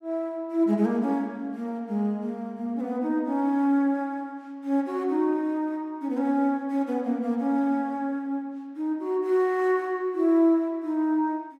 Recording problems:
none

